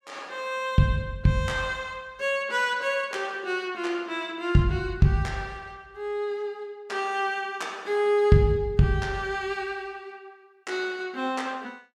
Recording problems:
none

